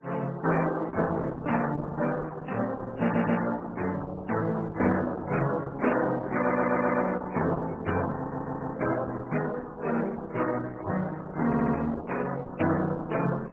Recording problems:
lossy compression; MP3, then Opus, log-spectral distance 4 dB, nothing above 7.3 kHz
audio stuttering; 4 times, first at 3 s
microphone handling noise; from 11 to 12 s; peak -8 dB vs average level

